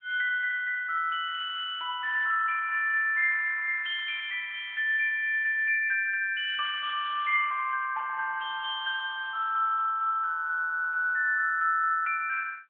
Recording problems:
phone line; 220 Hz to 3.4 kHz, AMR-NB

